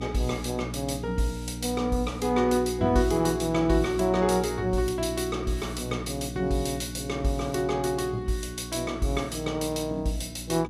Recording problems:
electrical hum; 60 Hz, harmonics up to 300 Hz, SNR 10 dB

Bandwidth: 14 kHz